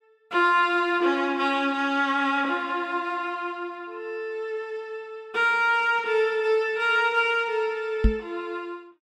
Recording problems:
microphone thump; at 8 s; peak +7 dB vs average level

